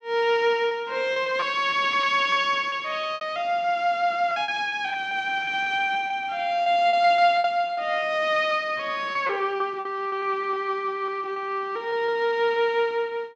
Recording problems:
lost packets; 11% of the sound replaced, filled with repeated pitch periods

